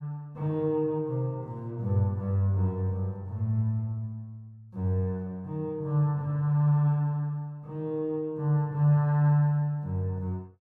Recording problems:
none

